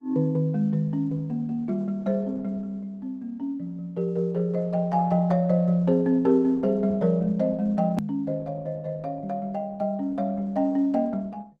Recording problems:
codec artefacts; Opus, log-spectral distance 2 dB, nothing above 13.3 kHz
edit click; at 8 s

